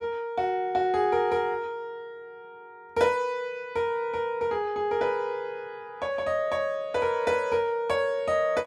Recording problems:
none

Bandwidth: 14 kHz